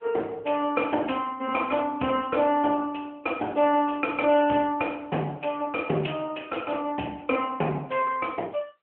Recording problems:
telephone audio; 260 Hz to 3.2 kHz, AMR-NB

